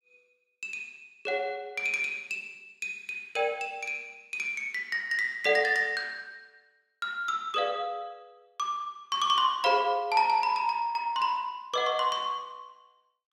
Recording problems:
none

